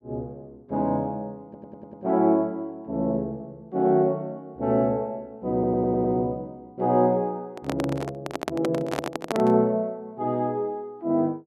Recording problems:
stutter; at 1.5 s and at 5.5 s
handling noise; from 7.5 to 9.5 s; peak +2 dB vs average level

